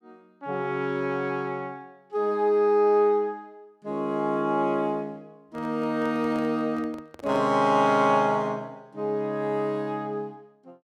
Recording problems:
handling noise; from 5.5 to 7.5 s; peak -12 dB vs average level

